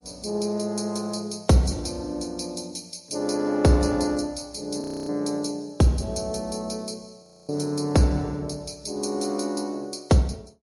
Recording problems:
codec artefacts; MP3, log-spectral distance 4 dB, nothing above 11.3 kHz
frozen audio; at 5 s and at 7 s

